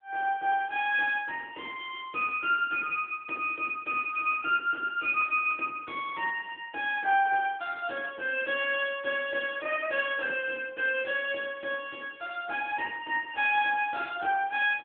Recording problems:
telephone audio; 280 Hz to 3.4 kHz, AMR-NB

